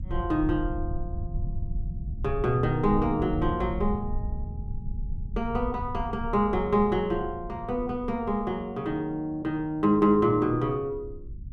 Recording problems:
low-frequency rumble; below 92 Hz, SNR 9 dB

